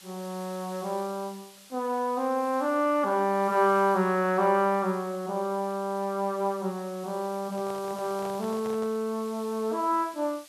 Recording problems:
background hiss; slope +2 dB per octave, SNR 21 dB
handling noise; from 7.5 to 9 s; peak -10 dB vs average level

